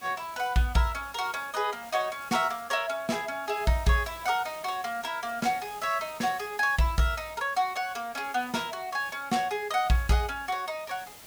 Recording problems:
hiss; slope -2 dB per octave, SNR 18 dB

